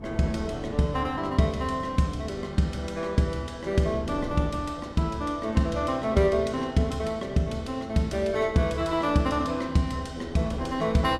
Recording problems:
wind noise; below 420 Hz, SNR 16 dB

